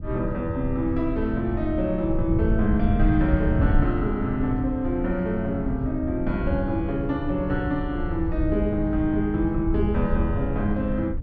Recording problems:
rumble; below 96 Hz, SNR 4 dB

